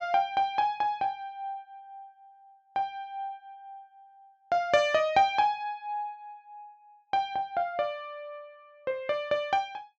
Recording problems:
treble missing; nothing above 8 kHz

